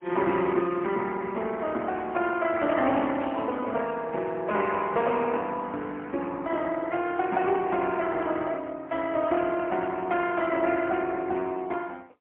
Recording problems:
phone line; 240 Hz to 3 kHz, AMR-NB, then MP3

